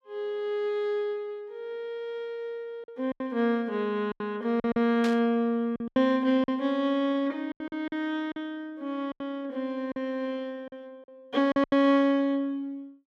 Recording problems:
lost packets; 8% of the sound replaced, filled with silence
static burst; at 5 s; peak -4 dB vs average level

